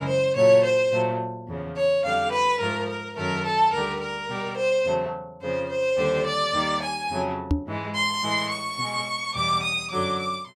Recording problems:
microphone bump; at 7.5 s; peak +5 dB vs average level

